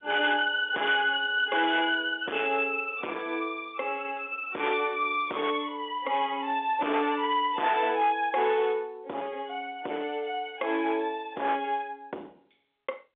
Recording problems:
telephone audio; 300 Hz to 3.6 kHz, G.711
distortion; hard clipping, signal-to-distortion ratio 10 dB

